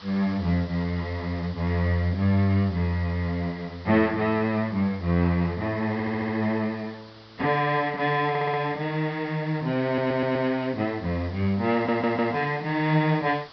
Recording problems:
low-pass filter; nothing above 5.5 kHz
hiss; SNR 23 dB
stutter; 4 times, first at 6 s

